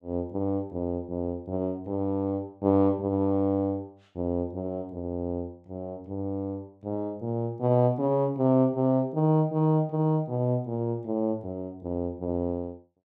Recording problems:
none

